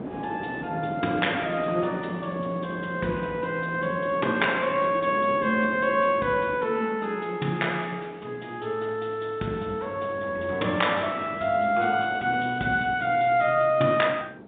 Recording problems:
telephone audio; 170 Hz to 3.7 kHz, G.711
wind on the microphone; below 520 Hz, SNR 14 dB

